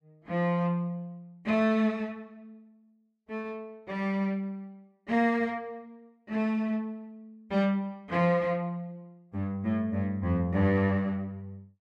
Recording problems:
none

